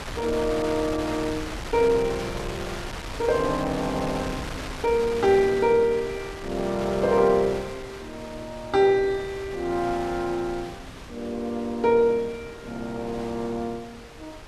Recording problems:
wind noise; below 2.2 kHz, SNR 12 dB

